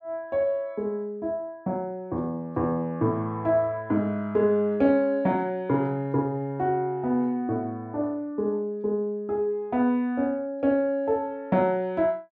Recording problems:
none

